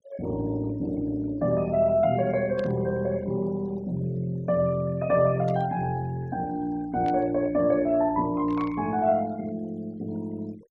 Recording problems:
denoising artefacts; signal-to-artefact ratio 24 dB
static burst; 4 times, first at 2.5 s; peak -14 dB vs average level

